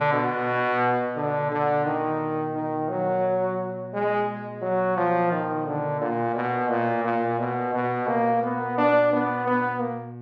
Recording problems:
hum; 60 Hz, harmonics up to 1.1 kHz, SNR 16 dB

